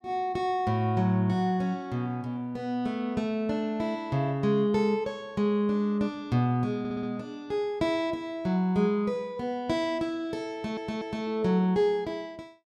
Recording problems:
stutter; at 7 s and at 11 s

